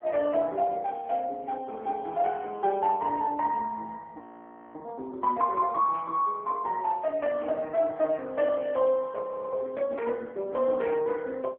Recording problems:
telephone audio; 260 Hz to 3.2 kHz, AMR-NB
burst of static; at 1 s and at 6 s; peak -18 dB vs average level
audio freezing; at 4 s for 0.5 s and at 9 s

